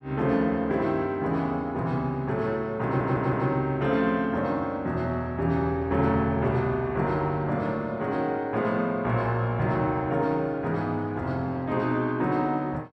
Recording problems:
audio stuttering; at 3 s

